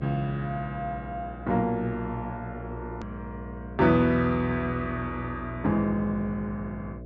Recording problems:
treble cut off; nothing above 8 kHz
hum; 60 Hz, harmonics up to 660 Hz, SNR 12 dB
edit click; at 3 s

